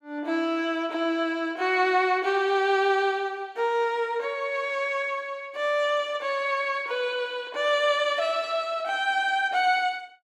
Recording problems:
none

